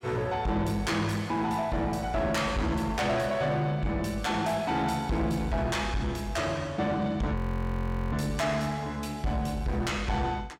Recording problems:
distortion; soft clipping, signal-to-distortion ratio 11 dB
audio freezing; at 7.5 s for 1 s

